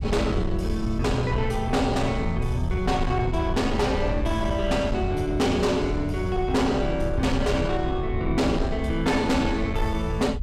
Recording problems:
distortion; soft clipping, signal-to-distortion ratio 11 dB
low-frequency rumble; below 94 Hz, SNR 6 dB

